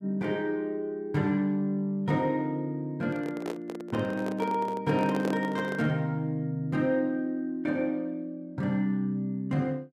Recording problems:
handling noise; from 3 to 6 s; peak -1 dB vs average level

